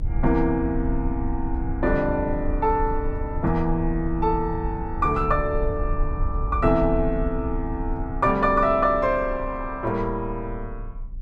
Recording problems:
low-frequency rumble; below 68 Hz, SNR 7 dB

